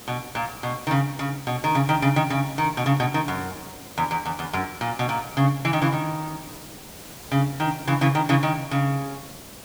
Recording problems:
background hiss; slope -3 dB per octave, SNR 16 dB

